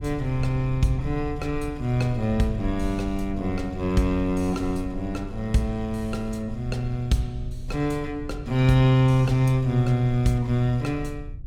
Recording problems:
rumble; below 80 Hz, SNR 13 dB

